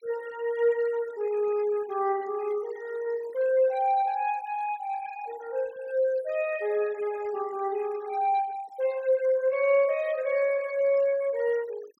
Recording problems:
noise reduction artefacts; signal-to-artefact ratio 21 dB

